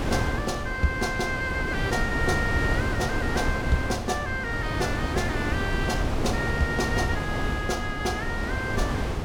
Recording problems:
wind noise; below 480 Hz, SNR 1 dB

